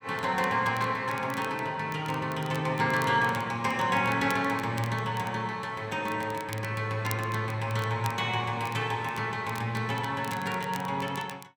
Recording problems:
crackling; vinyl, SNR 18 dB

